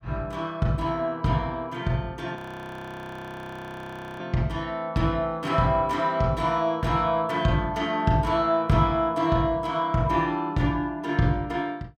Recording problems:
audio freezing; at 2.5 s for 2 s

